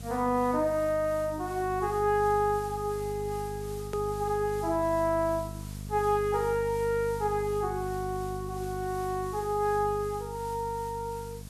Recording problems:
electrical hum; 50 Hz, harmonics up to 500 Hz, SNR 11 dB
hiss; slope 0 dB per octave, SNR 19 dB
click at an edit; at 4 s

